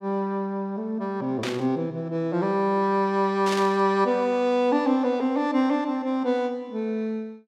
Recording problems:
burst of static; at 1.5 s and at 3.5 s; peak -3 dB vs average level

